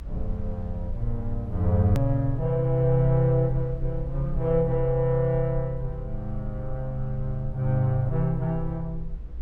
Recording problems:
low-frequency rumble; below 56 Hz, strongest tone 20 Hz, SNR 11 dB
click at an edit; at 2 s

